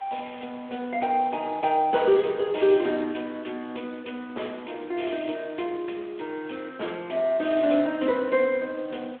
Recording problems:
phone line; 260 Hz to 3.5 kHz, Speex
hiss; SNR 25 dB

